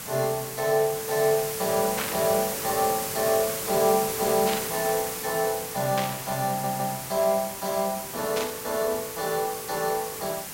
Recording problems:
background hiss; slope -2 dB per octave, SNR 5 dB
static burst; 4 times, first at 2 s; peak 0 dB vs average level
audio stuttering; at 6.5 s

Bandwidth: 16 kHz